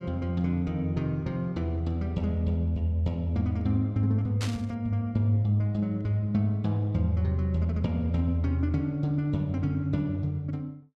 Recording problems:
static burst; at 4.5 s; peak -4 dB vs average level

